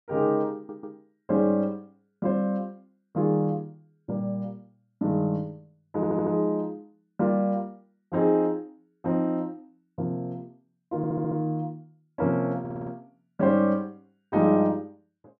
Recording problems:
audio stuttering; 4 times, first at 0.5 s

